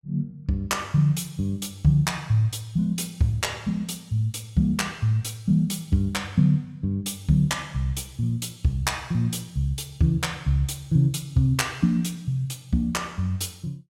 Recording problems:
none

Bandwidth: 16 kHz